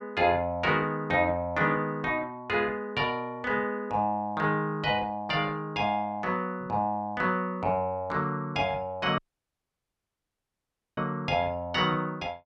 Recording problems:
audio cutting out; at 9 s for 2 s

